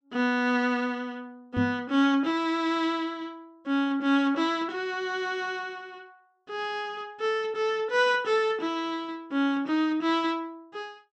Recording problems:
microphone thump; at 1.5 s; peak 0 dB vs average level

